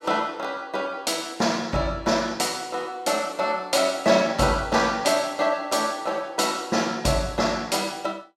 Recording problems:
none

